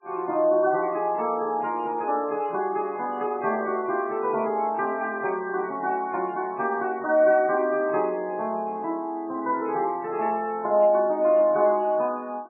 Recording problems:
lossy codec; MP3, log-spectral distance 2 dB, nothing above 2.5 kHz

